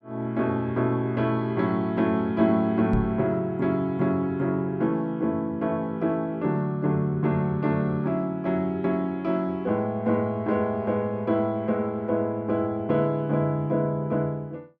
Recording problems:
microphone thump; at 3 s; peak +3 dB vs average level

